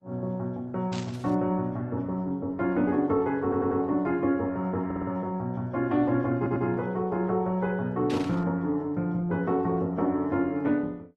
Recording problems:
lossy codec; Opus, log-spectral distance 2 dB
burst of static; at 1 s and at 8 s; peak -8 dB vs average level
stutter; at 3.5 s, at 5 s and at 6.5 s

